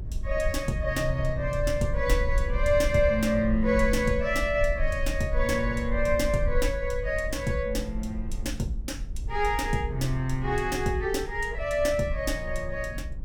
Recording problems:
low-frequency rumble; below 64 Hz, SNR 6 dB

